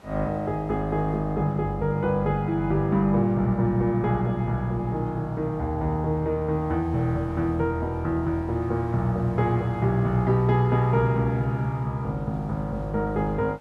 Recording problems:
hiss; slope -6 dB per octave, SNR 29 dB

